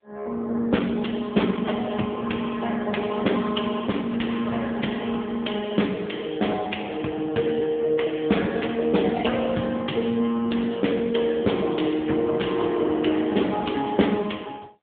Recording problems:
phone line; 150 Hz to 3.6 kHz, AMR-NB

